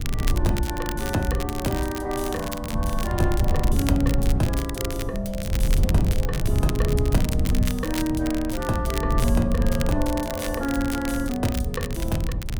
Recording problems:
wind on the microphone; below 110 Hz, SNR 0 dB
crackling; vinyl, SNR 9 dB

